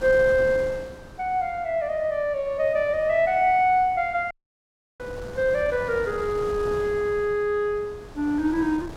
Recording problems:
wind noise; below 680 Hz, SNR 17 dB
audio cutting out; at 4.5 s for 0.5 s

